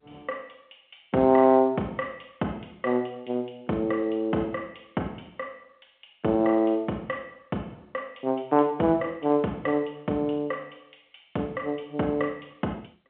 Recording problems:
telephone audio; 190 Hz to 3.7 kHz, G.711

